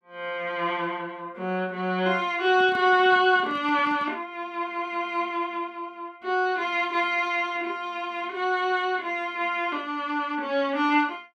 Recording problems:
microphone handling noise; from 2.5 to 4 s; peak -11 dB vs average level

